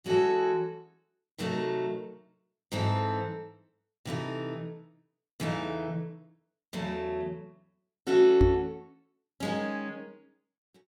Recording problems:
microphone bump; at 8.5 s; peak +7 dB vs average level

